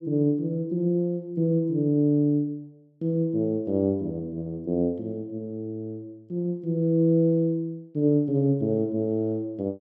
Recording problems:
none

